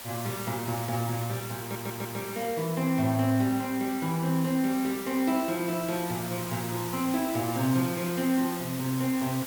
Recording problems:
background hiss; slope -1 dB per octave, SNR 9 dB
stutter; at 1.5 s

